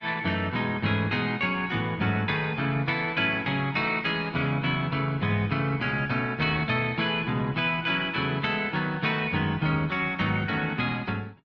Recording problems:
lossy codec; Opus, log-spectral distance 3 dB

